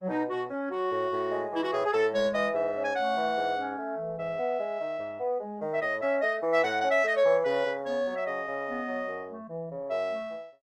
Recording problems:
lossy compression; Opus, log-spectral distance 2 dB, nothing above 14.3 kHz

